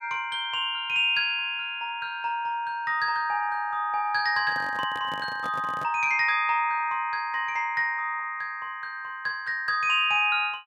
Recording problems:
microphone handling noise; from 4.5 to 6 s; peak -10 dB vs average level

